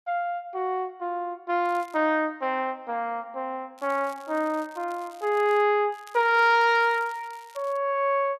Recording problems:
crackle; at 1.5 s, from 4 to 5.5 s and from 6 to 8 s; loose cable, SNR 27 dB

